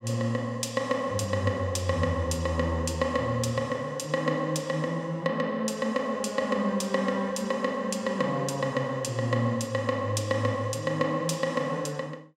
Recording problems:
none

